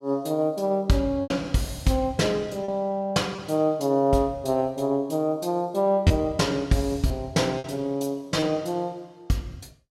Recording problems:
lost packets; 3% of the sound replaced, filled with repeated pitch periods

